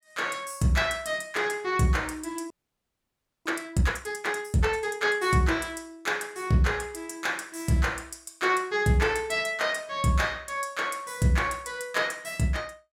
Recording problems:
frozen audio; at 2.5 s for 1 s

